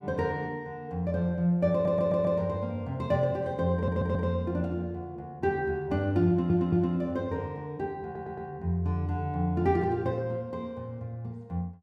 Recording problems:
audio stuttering; 4 times, first at 1.5 s

